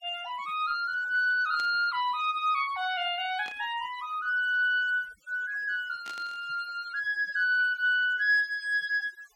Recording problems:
denoising artefacts; signal-to-artefact ratio 21 dB
static burst; at 1.5 s, at 3.5 s and at 6 s; peak -12 dB vs average level

